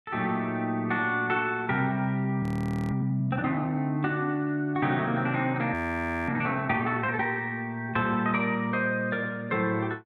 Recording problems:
audio freezing; at 2.5 s and at 5.5 s for 0.5 s

